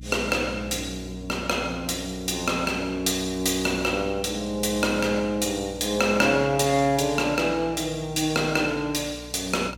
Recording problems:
hum; 60 Hz, harmonics up to 300 Hz, SNR 18 dB

